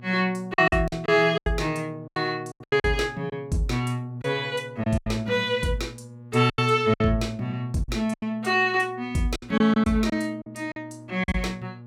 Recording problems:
electrical hum; 60 Hz, harmonics up to 840 Hz, SNR 20 dB
lost packets; 10% of the sound replaced, filled with silence

